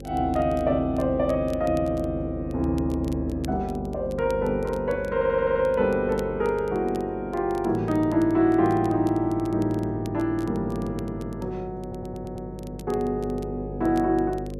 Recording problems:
hum; 50 Hz, harmonics up to 550 Hz, SNR 11 dB
crackling; vinyl, SNR 27 dB
stutter; at 5 s and at 12 s

